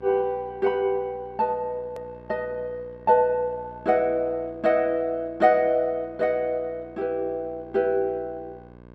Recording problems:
hum; 60 Hz, harmonics up to 1.7 kHz, SNR 23 dB
hard cut with a click; at 2 s

